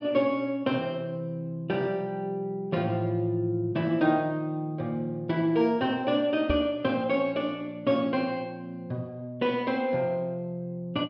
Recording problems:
low-pass filter; nothing above 5.5 kHz
microphone bump; at 6.5 s; peak +1 dB vs average level

